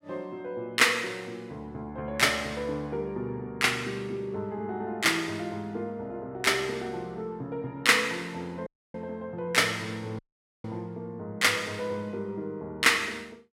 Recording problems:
dropout; at 8.5 s and at 10 s

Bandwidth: 16 kHz